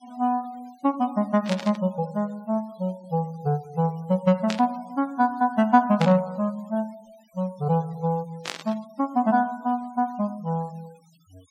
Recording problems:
denoising artefacts; signal-to-artefact ratio 27 dB
static burst; 4 times, first at 1.5 s; peak 0 dB vs average level

